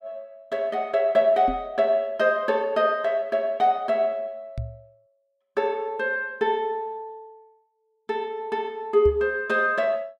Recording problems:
microphone bump; at 1.5 s, at 4.5 s and at 9 s; peak -3 dB vs average level

